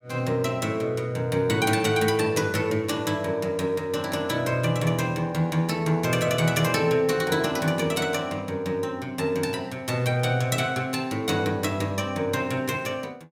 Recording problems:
none

